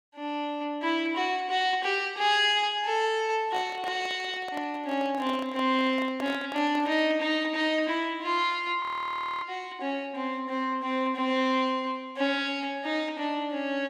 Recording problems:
handling noise; from 3.5 to 7 s; peak -7 dB vs average level
frozen audio; at 9 s for 0.5 s

